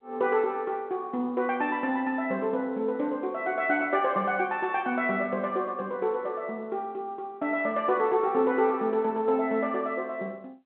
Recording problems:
phone line; 190 Hz to 4 kHz, G.711

